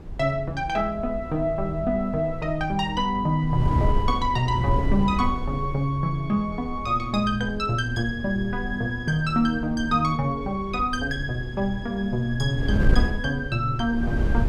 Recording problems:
wind on the microphone; below 100 Hz, SNR 7 dB

